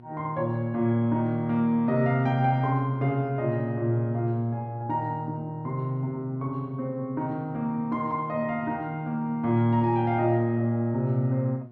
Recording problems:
hum; 60 Hz, harmonics up to 1.1 kHz, SNR 23 dB

